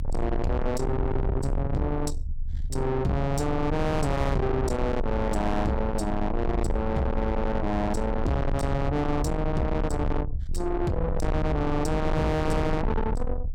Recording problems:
distorted audio; soft clipping, signal-to-distortion ratio 6 dB
low-frequency rumble; below 280 Hz, strongest tone 22 Hz, SNR 3 dB

